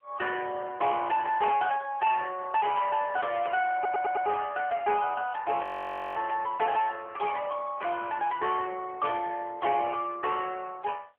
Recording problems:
telephone audio; 260 Hz to 3.3 kHz, AMR-NB
distorted audio; soft clipping, signal-to-distortion ratio 11 dB
static burst; at 2.5 s and at 10 s; peak -20 dB vs average level
audio stuttering; at 4 s
frozen audio; at 5.5 s for 0.5 s

